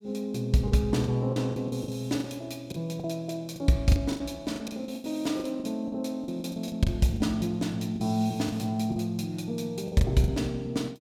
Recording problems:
lost packets; 12% of the sound replaced, filled with the last packet

